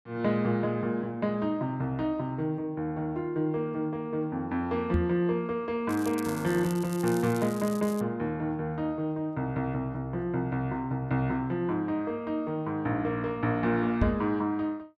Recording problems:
microphone thump; at 5 s and at 14 s; peak +6 dB vs average level
crackle; from 6 to 8 s; loose cable, SNR 15 dB

